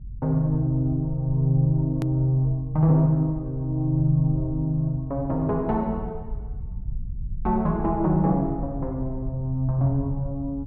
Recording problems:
low-frequency rumble; below 86 Hz, SNR 13 dB
edit click; at 2 s

